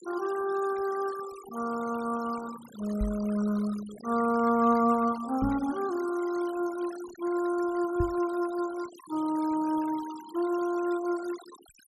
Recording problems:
noise reduction artefacts; signal-to-artefact ratio 17 dB
microphone thump; at 3 s, at 5.5 s and at 8 s; peak +2 dB vs average level

